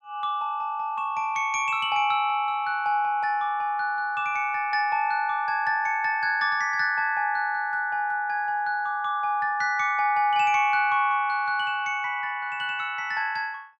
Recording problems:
none

